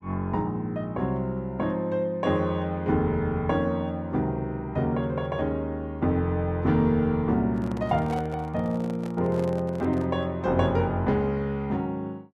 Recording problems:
handling noise; from 7.5 to 10 s; peak -8 dB vs average level

